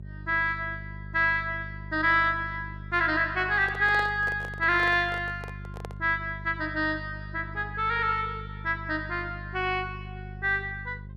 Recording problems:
hum; 50 Hz, harmonics up to 400 Hz, SNR 14 dB
microphone handling noise; from 3.5 to 6 s; peak -8 dB vs average level

